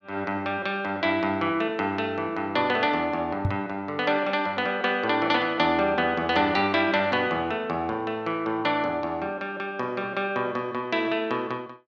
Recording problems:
knock on the microphone; at 3.5 s; peak +3 dB vs average level

